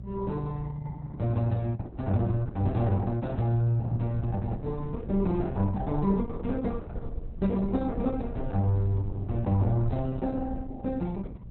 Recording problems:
lossy compression; Opus, log-spectral distance 2 dB, nothing above 4 kHz
hum; 60 Hz, harmonics up to 360 Hz, SNR 14 dB
rumble; below 66 Hz, SNR 12 dB

